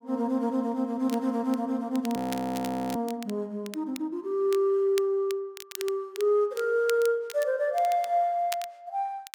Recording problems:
crackling; vinyl, SNR 17 dB
frozen audio; at 2 s for 1 s

